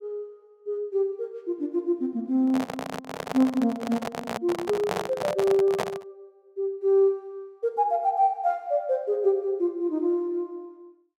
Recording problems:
microphone handling noise; from 2.5 to 6 s; peak +2 dB vs average level

